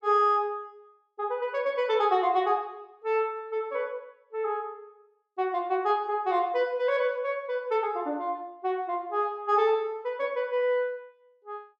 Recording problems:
none

